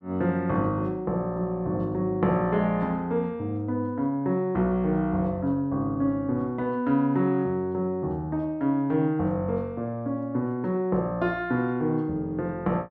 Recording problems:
none

